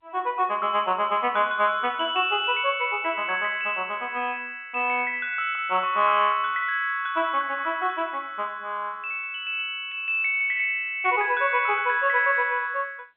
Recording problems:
telephone audio; 260 Hz to 3.7 kHz, G.711

